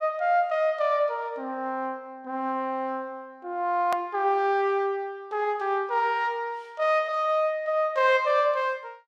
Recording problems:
click at an edit; at 4 s

